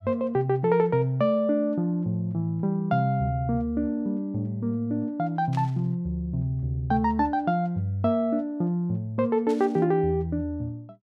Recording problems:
static burst; at 5.5 s and at 9.5 s; peak -14 dB vs average level

